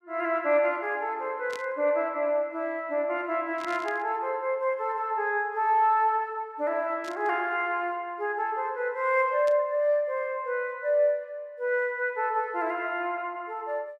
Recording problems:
static burst; 4 times, first at 1.5 s; peak -10 dB vs average level

